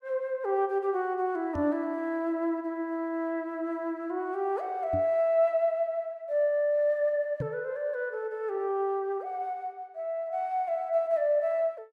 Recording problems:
microphone bump; at 1.5 s, at 5 s and at 7.5 s; peak -1 dB vs average level

